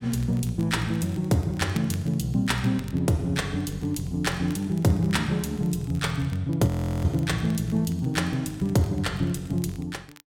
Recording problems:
crackling; vinyl, SNR 25 dB
frozen audio; at 6.5 s

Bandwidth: 16 kHz